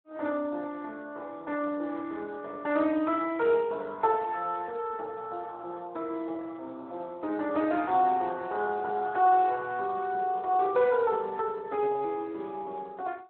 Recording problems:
phone line; 260 Hz to 2.6 kHz, Speex

